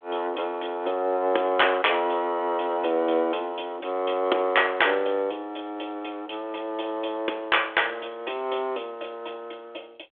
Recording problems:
phone line; 280 Hz to 3.5 kHz, G.726

